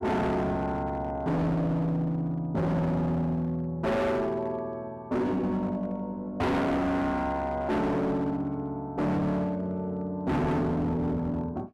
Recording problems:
distorted audio; hard clipping, signal-to-distortion ratio 7 dB

